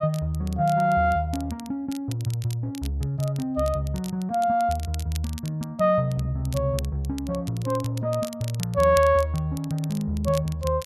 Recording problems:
crackle; vinyl, SNR 18 dB

